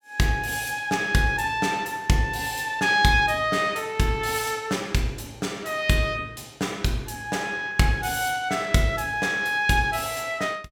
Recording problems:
none

